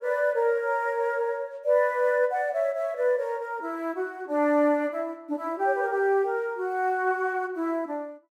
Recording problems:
none

